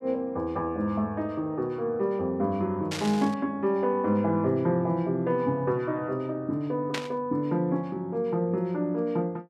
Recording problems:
static burst; at 3 s and at 7 s; peak +1 dB vs average level

